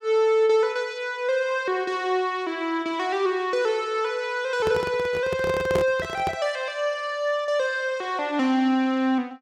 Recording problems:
microphone handling noise; from 4.5 to 6.5 s; peak +2 dB vs average level

